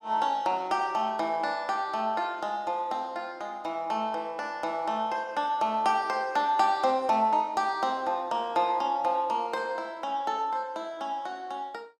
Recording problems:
none

